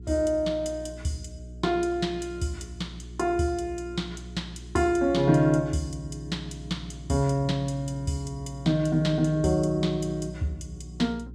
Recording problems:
hum; 60 Hz, harmonics up to 420 Hz, SNR 15 dB

